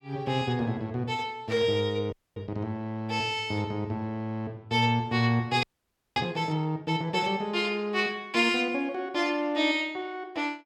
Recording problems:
static burst; at 1.5 s; peak -8 dB vs average level
frozen audio; at 2 s and at 5.5 s for 0.5 s

